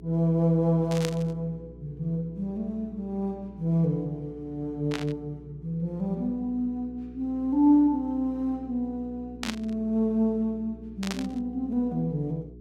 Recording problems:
mains hum; 60 Hz, harmonics up to 420 Hz, SNR 19 dB
burst of static; 4 times, first at 1 s; peak -1 dB vs average level

